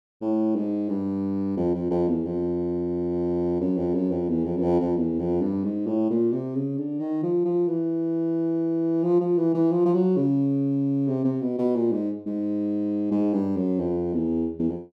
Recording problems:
none

